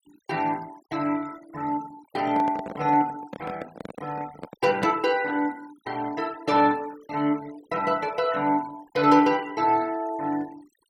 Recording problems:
denoising artefacts; signal-to-artefact ratio 22 dB
handling noise; from 2 to 5 s; peak 0 dB vs average level

